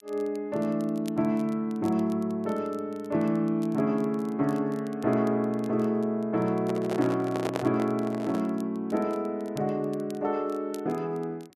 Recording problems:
crackle; vinyl, SNR 27 dB
handling noise; from 6.5 to 8.5 s; peak +1 dB vs average level

